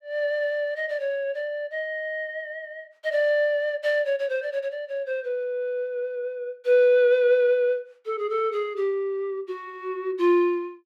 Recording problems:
none

